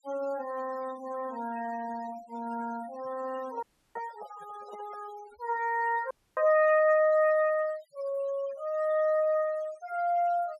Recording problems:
denoising artefacts; signal-to-artefact ratio 21 dB
microphone handling noise; from 3.5 to 5 s; peak -12 dB vs average level
audio cutting out; at 3.5 s and at 6 s

